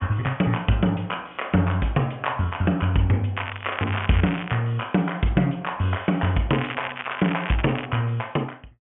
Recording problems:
treble missing; nothing above 3.2 kHz
crackle; from 3.5 to 4.5 s and from 6.5 to 8 s; loose cable, SNR 9 dB

